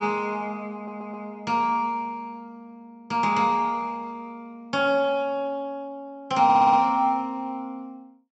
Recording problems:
treble cut off; nothing above 8 kHz
stutter; at 1 s and at 6.5 s

